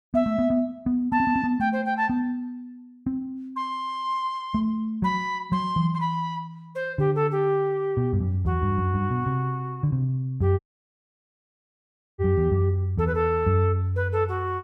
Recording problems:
dropout; at 11 s for 1.5 s

